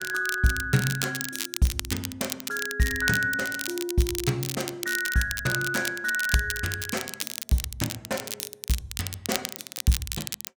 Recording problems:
crackling; vinyl, SNR 5 dB

